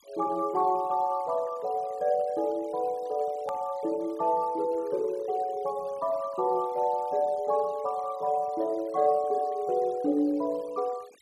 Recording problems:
denoising artefacts; signal-to-artefact ratio 26 dB
hard cut with a click; at 3.5 s

